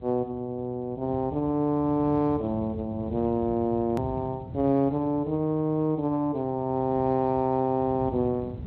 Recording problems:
lossy compression; Speex, log-spectral distance 2 dB, nothing above 13.1 kHz
low-frequency rumble; below 190 Hz, SNR 14 dB
edit click; at 4 s

